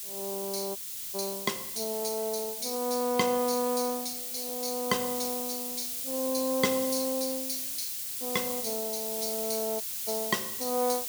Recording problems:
hiss; SNR 1 dB
audio cutting out; at 1 s and at 10 s

